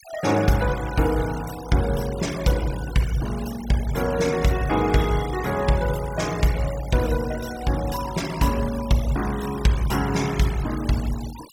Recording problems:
noise reduction artefacts; signal-to-artefact ratio 15 dB

